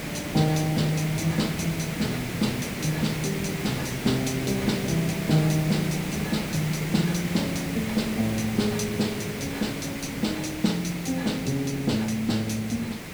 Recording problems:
background hiss; SNR 5 dB

